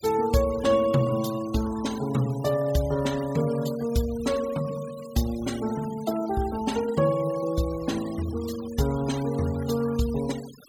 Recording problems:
noise reduction artefacts; signal-to-artefact ratio 17 dB

